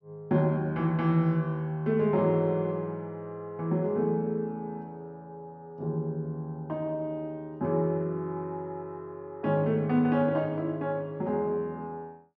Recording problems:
treble cut off; nothing above 6.4 kHz

